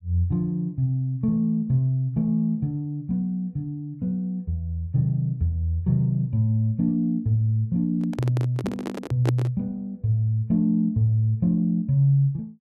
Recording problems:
microphone handling noise; from 8 to 9.5 s; peak +1 dB vs average level

